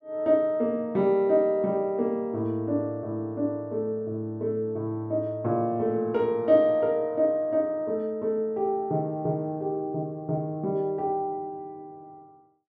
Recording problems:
none

